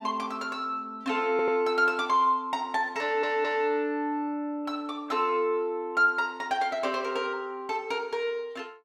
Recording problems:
audio stuttering; at 1.5 s and at 3 s

